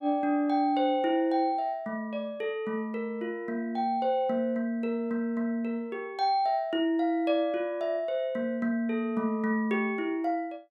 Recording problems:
none

